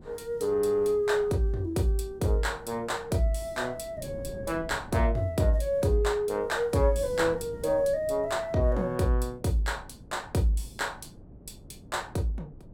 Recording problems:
wind noise; below 260 Hz, SNR 19 dB

